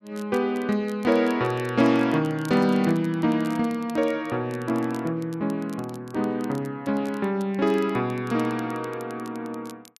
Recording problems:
crackle; vinyl, SNR 25 dB

